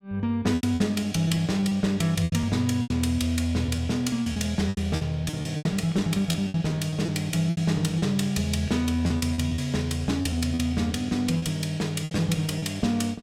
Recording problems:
packet loss; 11% of the sound replaced, filled with repeated pitch periods

